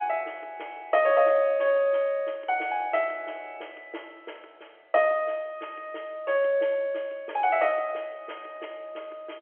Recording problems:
telephone audio; 280 Hz to 3.3 kHz, G.711

